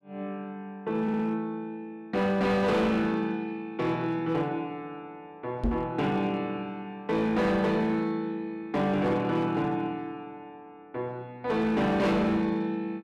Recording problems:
distortion; hard clipping, signal-to-distortion ratio 10 dB
audio stuttering; at 1 s
microphone thump; at 5.5 s; peak +4 dB vs average level

